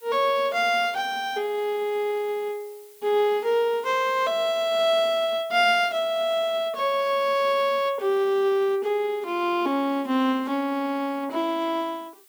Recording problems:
background hiss; slope +1 dB per octave, SNR 27 dB

